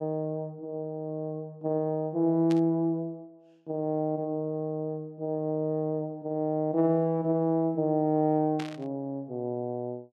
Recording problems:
static burst; at 2.5 s and at 8.5 s; peak -7 dB vs average level

